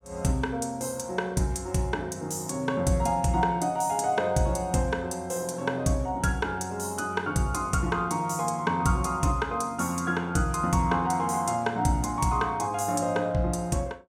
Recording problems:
none

